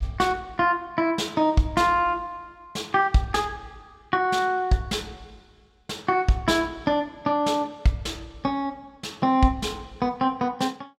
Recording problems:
none

